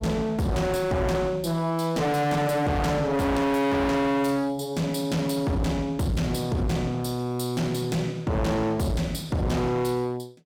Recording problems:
distorted audio; hard clipping, signal-to-distortion ratio 6 dB

